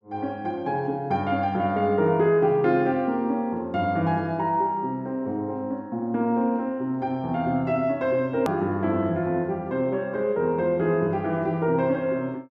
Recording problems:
click at an edit; at 8.5 s

